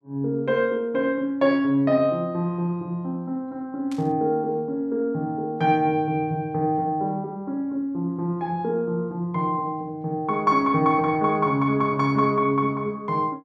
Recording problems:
burst of static; at 4 s; peak -14 dB vs average level

